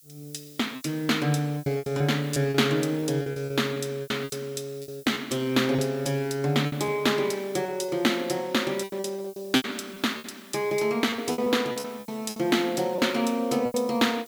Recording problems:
background hiss; SNR 23 dB
lost packets; 13% of the sound replaced, filled with repeated pitch periods

